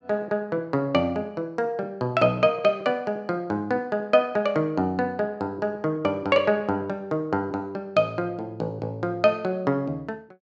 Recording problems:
none

